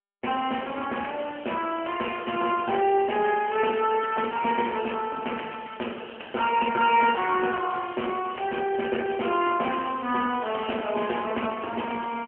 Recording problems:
telephone audio; 240 Hz to 3.2 kHz, AMR-NB

